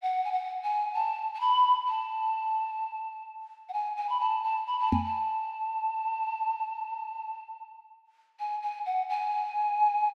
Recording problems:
knock on the microphone; at 5 s; peak +7 dB vs average level

